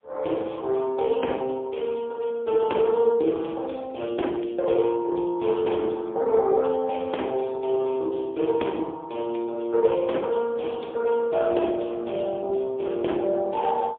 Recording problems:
phone line; 280 Hz to 3.8 kHz, AMR-NB, then MP3

